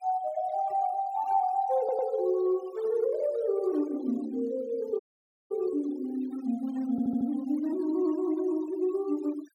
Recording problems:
denoising artefacts; signal-to-artefact ratio 23 dB
audio stuttering; at 2 s and at 7 s
audio cutting out; at 5 s for 0.5 s

